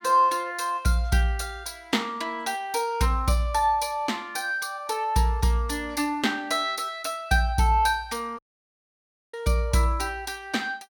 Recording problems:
dropout; at 8.5 s for 1 s

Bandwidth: 17 kHz